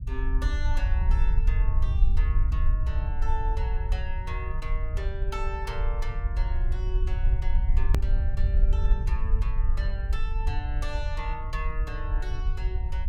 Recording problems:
rumble; below 60 Hz, SNR -10 dB
hard cut with a click; at 8 s

